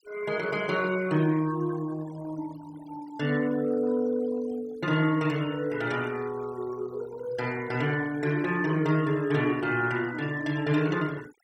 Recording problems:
noise reduction artefacts; signal-to-artefact ratio 19 dB

